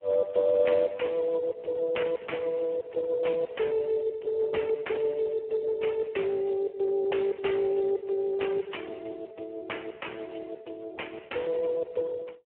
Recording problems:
phone line; 340 Hz to 3.2 kHz, Speex

